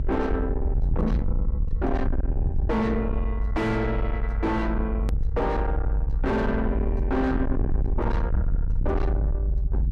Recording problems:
distortion; soft clipping, signal-to-distortion ratio 6 dB
rumble; below 76 Hz, SNR 0 dB
edit click; at 5 s

